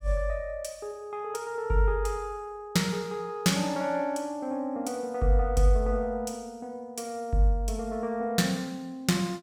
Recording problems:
none

